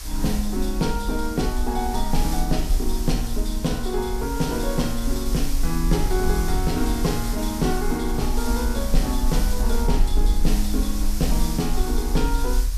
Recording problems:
background hiss; slope +1 dB per octave, SNR 9 dB
low-frequency rumble; below 46 Hz, strongest tone 26 Hz, SNR 2 dB

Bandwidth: 14.5 kHz